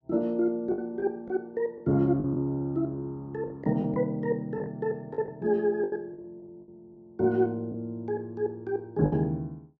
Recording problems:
packet loss; 7% of the sound replaced, filled with the last packet

